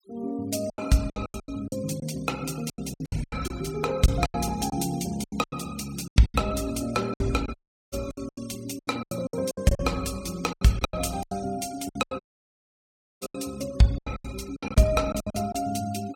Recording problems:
noise reduction artefacts; signal-to-artefact ratio 18 dB
packet loss; 17% of the sound replaced, filled with silence
audio cutting out; at 7.5 s and at 12 s for 1 s

